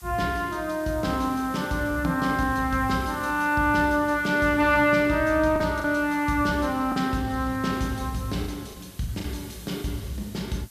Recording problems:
hiss; SNR 22 dB
packet loss; 3% of the sound replaced, filled with the last packet

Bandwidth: 14.5 kHz